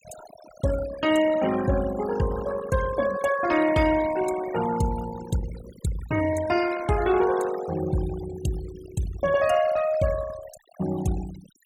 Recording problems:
noise reduction artefacts; signal-to-artefact ratio 13 dB

